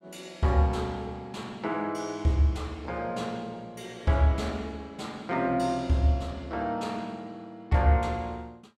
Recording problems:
none

